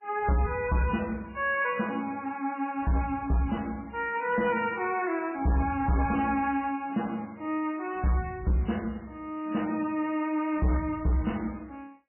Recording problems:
codec artefacts; MP3, log-spectral distance 6 dB, nothing above 2.5 kHz
distortion; hard clipping, signal-to-distortion ratio 12 dB

